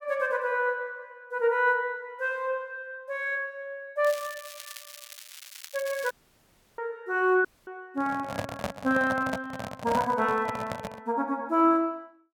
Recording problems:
crackling; from 4 to 6 s; loose cable, SNR 14 dB
dropout; at 6 s for 0.5 s and at 7.5 s
handling noise; from 8 to 11 s; peak +1 dB vs average level

